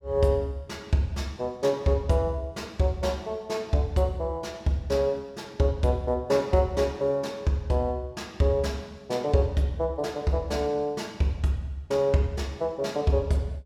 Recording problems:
none

